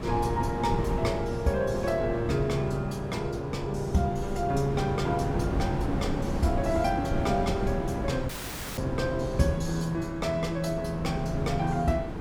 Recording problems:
wind on the microphone; below 320 Hz, SNR 4 dB
dropout; at 8.5 s

